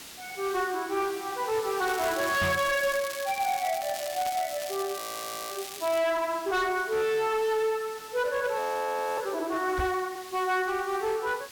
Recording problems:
distorted audio; hard clipping, signal-to-distortion ratio 11 dB
background hiss; SNR 15 dB
crackling; from 2 to 6 s; loose cable, SNR 10 dB
microphone thump; at 2.5 s and at 10 s; peak +1 dB vs average level
frozen audio; at 5 s for 0.5 s and at 8.5 s for 0.5 s

